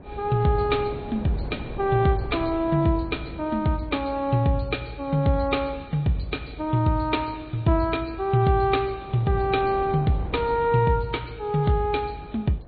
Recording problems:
treble missing; nothing above 4.2 kHz
lossy codec; MP3, log-spectral distance 4 dB
wind noise; below 490 Hz, SNR 17 dB

